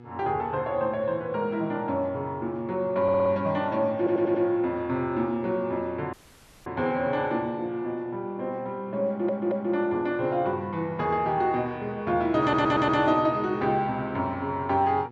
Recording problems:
electrical hum; 60 Hz, harmonics up to 1.8 kHz, SNR 22 dB
stutter; 4 times, first at 3 s
dropout; at 6 s for 0.5 s

